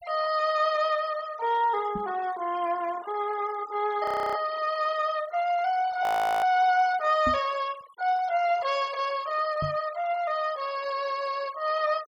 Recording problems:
denoising artefacts; signal-to-artefact ratio 20 dB
microphone bump; at 2 s, at 7.5 s and at 9.5 s; peak -2 dB vs average level
frozen audio; at 4 s and at 6 s

